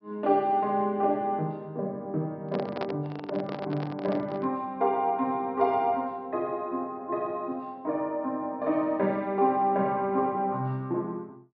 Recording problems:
low-pass filter; nothing above 5.5 kHz
microphone handling noise; from 2.5 to 4.5 s; peak 0 dB vs average level

